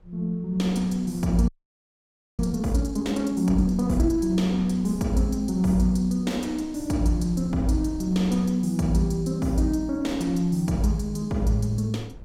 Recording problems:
wind on the microphone; below 140 Hz, SNR 21 dB
audio freezing; at 1.5 s for 1 s

